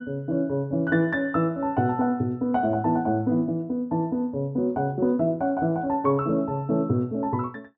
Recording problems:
none

